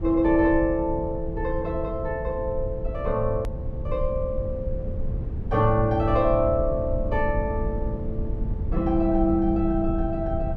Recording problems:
rumble; below 94 Hz, SNR 6 dB
edit click; at 3.5 s

